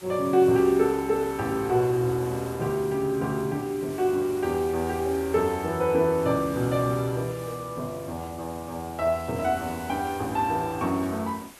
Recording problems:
hiss; slope -3 dB per octave, SNR 19 dB

